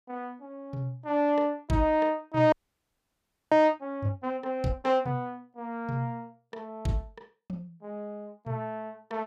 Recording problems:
audio freezing; at 2.5 s for 1 s

